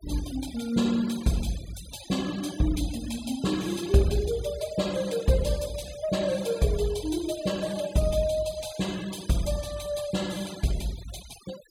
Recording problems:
noise reduction artefacts; signal-to-artefact ratio 16 dB

